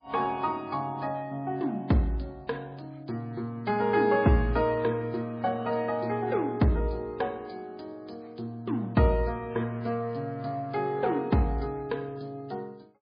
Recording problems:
lossy compression; MP3, log-spectral distance 3 dB, nothing above 4.2 kHz

